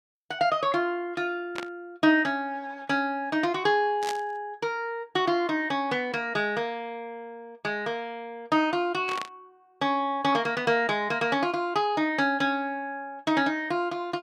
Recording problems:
static burst; at 1.5 s, at 4 s and at 9 s; peak -3 dB vs average level

